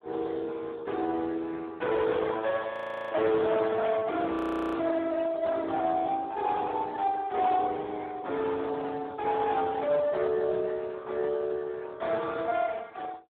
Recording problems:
phone line; 280 Hz to 2.1 kHz, Speex
distortion; hard clipping, signal-to-distortion ratio 13 dB
audio freezing; at 2.5 s and at 4.5 s

